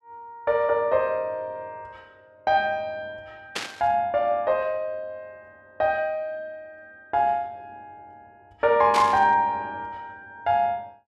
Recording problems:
static burst; at 3.5 s and at 9 s; peak 0 dB vs average level

